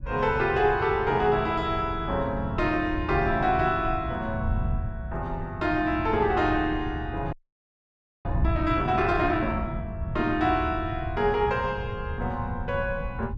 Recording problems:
wind on the microphone; below 120 Hz, SNR 8 dB
frozen audio; at 7.5 s for 1 s

